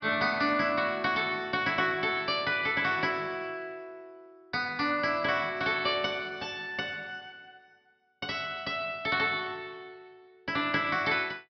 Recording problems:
low-pass filter; nothing above 5.5 kHz

